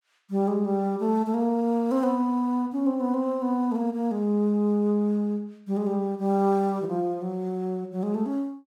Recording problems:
none

